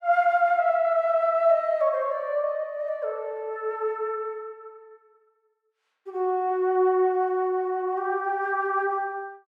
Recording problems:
none

